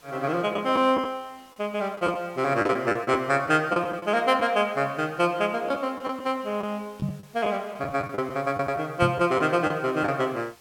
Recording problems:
hiss; slope -1 dB per octave, SNR 28 dB
lost packets; 7% of the sound replaced, filled with the last packet
microphone bump; at 7 s and at 9 s; peak +2 dB vs average level

